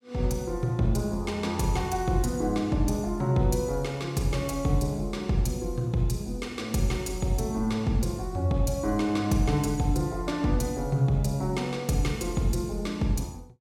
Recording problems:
none

